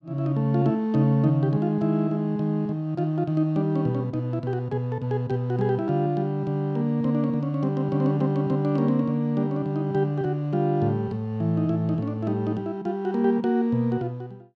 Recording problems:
none

